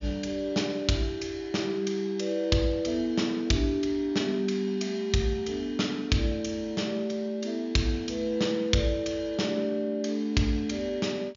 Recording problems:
treble missing; nothing above 7.1 kHz

